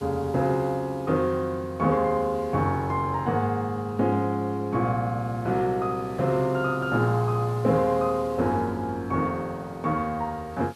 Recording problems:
background hiss; slope 0 dB per octave, SNR 27 dB

